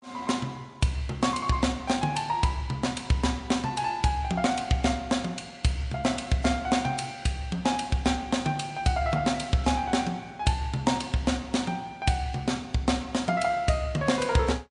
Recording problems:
codec artefacts; MP3, log-spectral distance 3 dB

